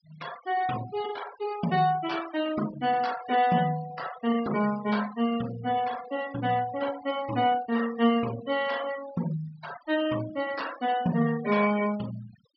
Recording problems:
treble missing; nothing above 5.5 kHz
noise reduction artefacts; signal-to-artefact ratio 15 dB

